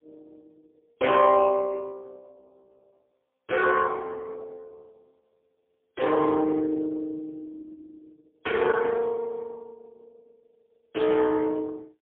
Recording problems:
phone line; 320 Hz to 2.2 kHz, AMR-NB, then MP3

